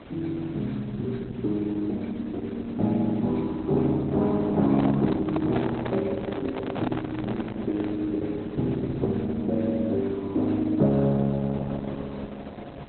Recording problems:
lossy compression; Opus, log-spectral distance 4 dB, nothing above 4.1 kHz
hiss; SNR 19 dB
microphone handling noise; from 4.5 to 8 s; peak -1 dB vs average level

